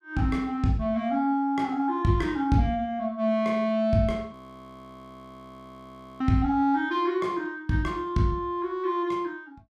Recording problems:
frozen audio; at 4.5 s for 2 s

